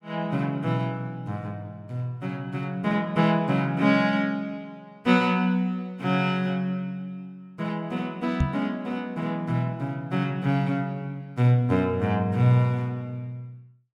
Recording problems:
microphone bump; at 8.5 s; peak +6 dB vs average level

